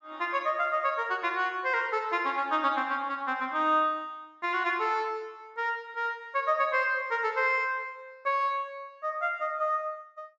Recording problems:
treble missing; nothing above 8 kHz

